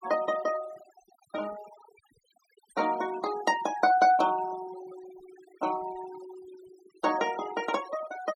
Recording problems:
denoising artefacts; signal-to-artefact ratio 18 dB

